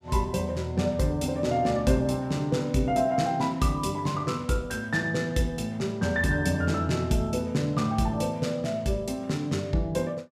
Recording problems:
none

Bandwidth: 15.5 kHz